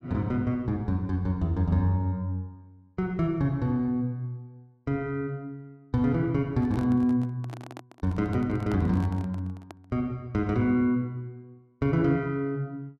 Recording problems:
microphone handling noise; from 6.5 to 10 s; peak -8 dB vs average level

